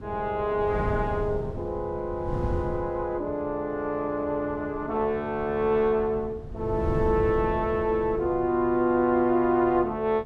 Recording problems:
wind on the microphone; below 170 Hz, SNR 10 dB

